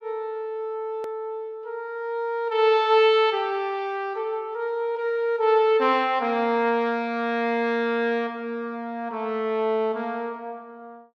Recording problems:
edit click; at 1 s

